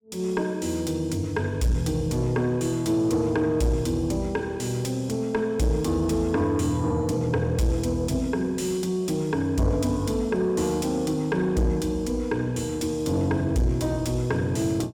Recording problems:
distortion; soft clipping, signal-to-distortion ratio 12 dB

